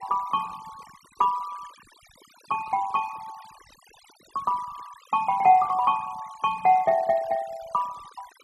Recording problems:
denoising artefacts; signal-to-artefact ratio 23 dB

